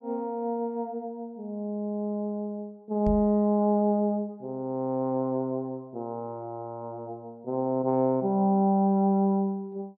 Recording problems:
microphone thump; at 3 s; peak -2 dB vs average level

